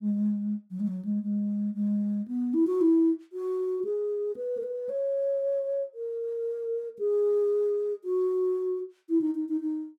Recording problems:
none

